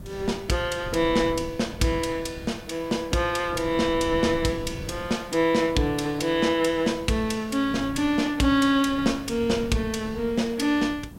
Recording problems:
background hiss; slope -3 dB per octave, SNR 30 dB
wind on the microphone; below 230 Hz, SNR 16 dB

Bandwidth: 16 kHz